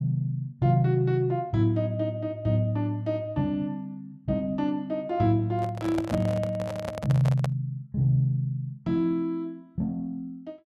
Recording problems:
handling noise; from 5.5 to 7.5 s; peak -2 dB vs average level

